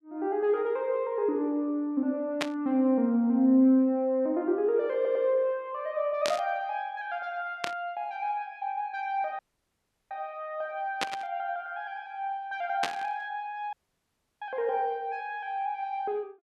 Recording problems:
burst of static; 5 times, first at 2.5 s; peak +4 dB vs average level
audio stuttering; at 5 s
audio cutting out; at 9.5 s for 0.5 s and at 14 s for 0.5 s

